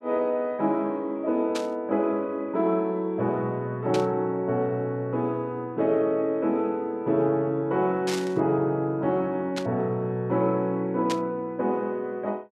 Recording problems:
burst of static; 5 times, first at 1.5 s; peak -2 dB vs average level

